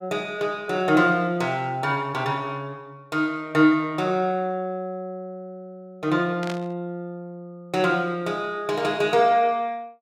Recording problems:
static burst; at 6.5 s; peak -7 dB vs average level

